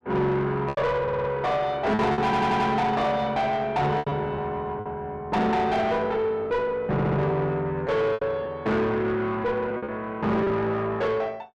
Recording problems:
distortion; soft clipping, signal-to-distortion ratio 7 dB
lost packets; 5% of the sound replaced, filled with repeated pitch periods
stutter; at 1 s, at 2 s and at 7 s

